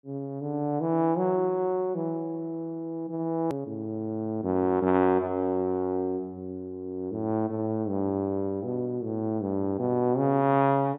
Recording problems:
treble cut off; nothing above 3.8 kHz
click at an edit; at 3.5 s

